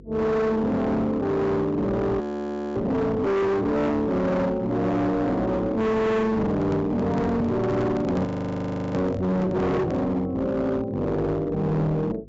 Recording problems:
low-pass filter; nothing above 8 kHz
distorted audio; hard clipping, signal-to-distortion ratio 7 dB
hum; 50 Hz, harmonics up to 500 Hz, SNR 24 dB
audio freezing; at 2 s for 0.5 s and at 8.5 s for 0.5 s
microphone handling noise; from 6.5 to 10 s; peak -2 dB vs average level

